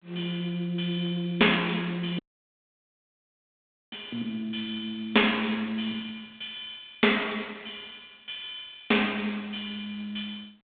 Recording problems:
phone line; 240 Hz to 3.6 kHz, G.726
dropout; at 2 s for 1.5 s

